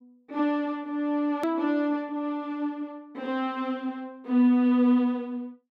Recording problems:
edit click; at 1.5 s

